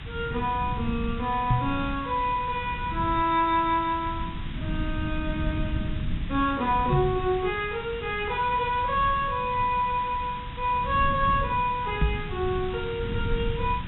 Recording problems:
treble missing; nothing above 3.8 kHz
hiss; SNR 16 dB
rumble; below 160 Hz, SNR 8 dB
knock on the microphone; at 1.5 s, at 7 s and at 12 s; peak +6 dB vs average level

